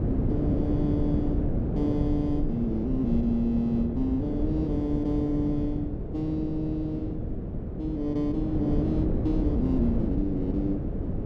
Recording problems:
wind on the microphone; below 260 Hz, SNR 1 dB

